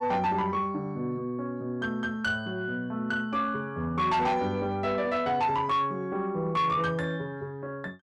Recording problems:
distortion; soft clipping, signal-to-distortion ratio 12 dB

